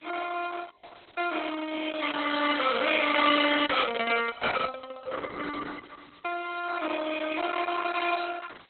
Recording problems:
lossy codec; Opus, log-spectral distance 10 dB, nothing above 3.9 kHz
hiss; SNR 30 dB

